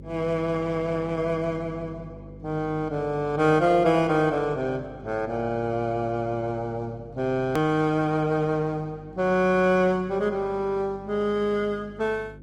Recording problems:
lossy compression; Opus, log-spectral distance 2 dB, nothing above 17.7 kHz
mains hum; 50 Hz, harmonics up to 550 Hz, SNR 19 dB
edit click; at 7.5 s

